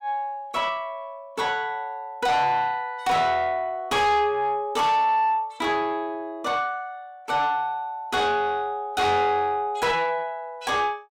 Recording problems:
distorted audio; soft clipping, signal-to-distortion ratio 7 dB

